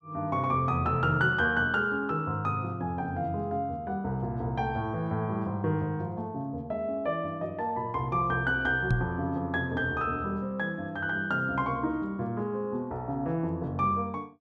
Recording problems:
microphone bump; at 9 s; peak +6 dB vs average level

